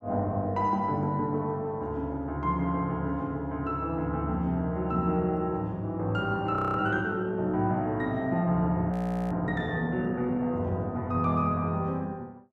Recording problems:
audio freezing; at 6.5 s and at 9 s

